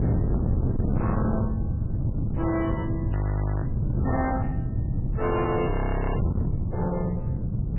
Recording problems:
lossy codec; MP3, log-spectral distance 2 dB, nothing above 2.6 kHz
distorted audio; hard clipping, uneven, signal-to-distortion ratio 6 dB
hum; 50 Hz, harmonics up to 800 Hz, SNR 20 dB
wind on the microphone; below 170 Hz, SNR -2 dB
audio freezing; at 3 s for 0.5 s and at 5.5 s

